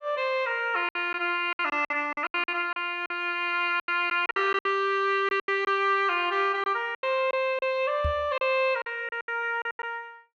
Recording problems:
lost packets; 12% of the sound replaced, filled with silence
knock on the microphone; at 8 s; peak -1 dB vs average level

